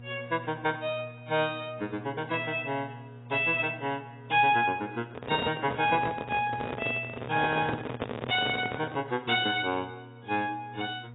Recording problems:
codec artefacts; AAC, log-spectral distance 5 dB, nothing above 3.7 kHz
hum; 60 Hz, harmonics up to 1.2 kHz, SNR 18 dB
handling noise; from 5 to 9 s; peak +3 dB vs average level

